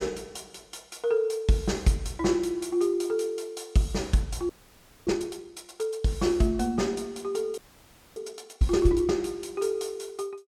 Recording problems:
frozen audio; at 4.5 s for 0.5 s and at 7.5 s for 0.5 s

